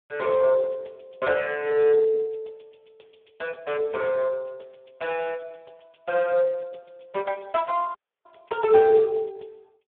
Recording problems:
telephone audio; 340 Hz to 3.3 kHz, Speex
dropout; at 8 s

